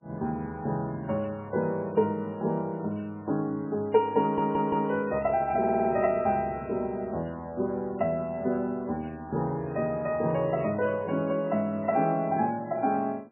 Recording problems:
codec artefacts; MP3, log-spectral distance 2 dB, nothing above 2.5 kHz
stutter; at 4 s and at 5.5 s

